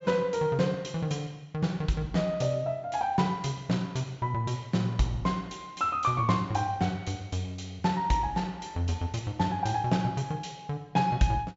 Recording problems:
treble missing; nothing above 8 kHz

